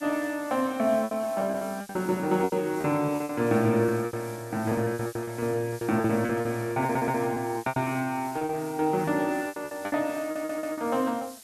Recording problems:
hiss; SNR 19 dB
packet loss; 16% of the sound replaced, filled with repeated pitch periods
stutter; at 7 s and at 10 s

